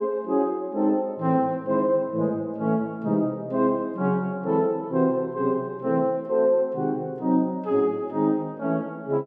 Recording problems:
none

